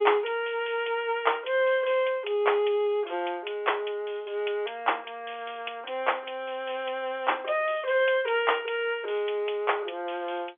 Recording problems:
telephone audio; 300 Hz to 3.5 kHz, G.711

